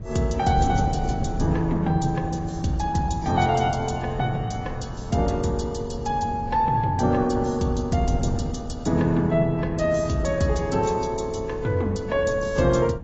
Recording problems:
lossy compression; AAC, log-spectral distance 3 dB, nothing above 7.1 kHz
wind noise; below 190 Hz, SNR 10 dB

